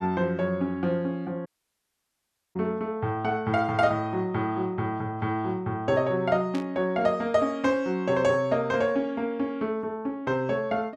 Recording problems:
audio cutting out; at 1.5 s for 1 s
burst of static; at 6.5 s; peak -9 dB vs average level

